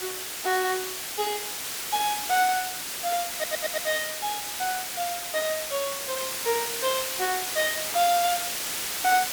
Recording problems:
background hiss; slope +1 dB per octave, SNR 1 dB
audio stuttering; at 3.5 s

